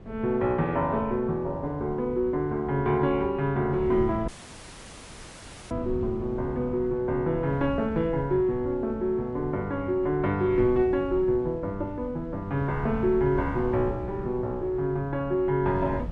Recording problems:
codec artefacts; MP3, log-spectral distance 2 dB, nothing above 13.1 kHz
wind on the microphone; below 180 Hz, SNR 13 dB
audio cutting out; at 4.5 s for 1.5 s

